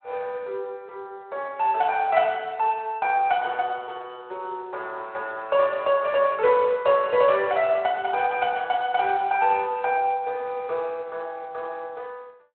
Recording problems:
phone line; 340 Hz to 3.4 kHz, Speex

